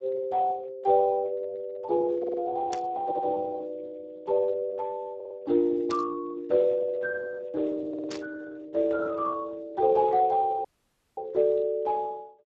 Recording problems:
codec artefacts; Speex, log-spectral distance 3 dB
audio stuttering; 4 times, first at 2 s
burst of static; at 2.5 s, at 6 s and at 8 s; peak -7 dB vs average level
audio cutting out; at 11 s for 0.5 s

